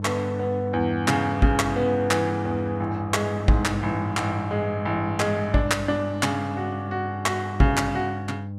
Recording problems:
hum; 50 Hz, harmonics up to 600 Hz, SNR 7 dB

